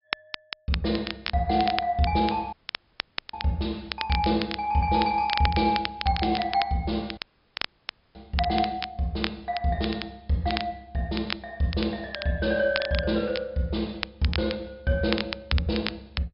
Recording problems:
treble missing; nothing above 5.5 kHz
crackling; vinyl, SNR 8 dB
audio cutting out; at 2.5 s for 1 s and at 7 s for 1 s

